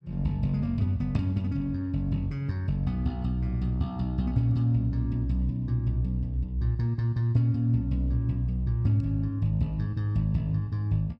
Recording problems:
none

